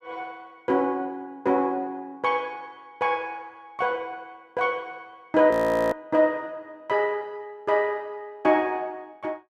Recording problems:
audio freezing; at 5.5 s

